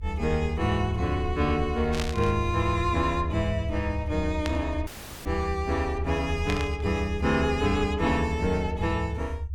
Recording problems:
rumble; below 80 Hz, strongest tone 68 Hz, SNR 5 dB
static burst; at 2 s, at 4.5 s and at 6.5 s; peak 0 dB vs average level
dropout; at 5 s

